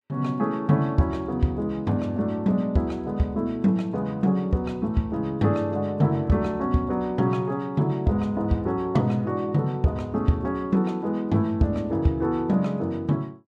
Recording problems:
none

